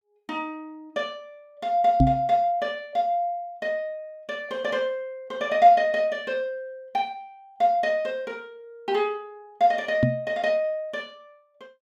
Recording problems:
knock on the microphone; at 2 s and at 10 s; peak +9 dB vs average level

